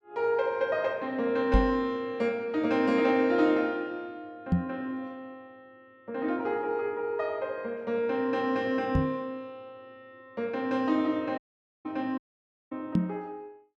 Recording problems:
microphone thump; 4 times, first at 1.5 s; peak +8 dB vs average level
dropout; at 11 s and at 12 s for 0.5 s

